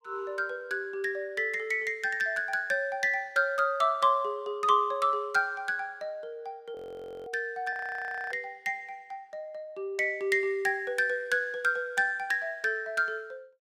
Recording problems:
frozen audio; at 7 s for 0.5 s and at 7.5 s for 0.5 s

